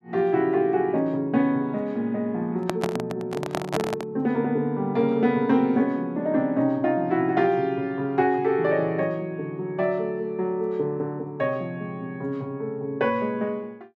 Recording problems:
handling noise; from 2.5 to 4 s; peak +2 dB vs average level

